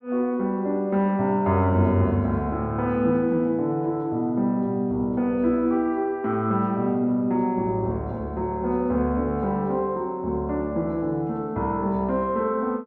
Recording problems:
none

